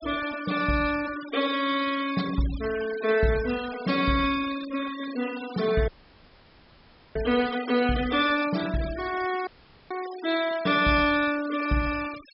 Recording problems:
low-pass filter; nothing above 5.4 kHz
denoising artefacts; signal-to-artefact ratio 14 dB
audio cutting out; at 6 s for 1.5 s and at 9.5 s

